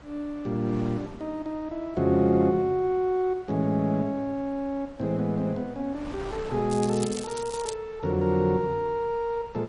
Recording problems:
lossy codec; MP3, log-spectral distance 2 dB, nothing above 13.1 kHz
wind on the microphone; below 1 kHz, SNR 20 dB
crackle; from 6.5 to 7.5 s; loose cable, SNR 12 dB

